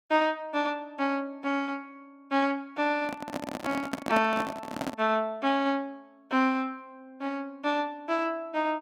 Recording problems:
microphone handling noise; from 3 to 5 s; peak +1 dB vs average level

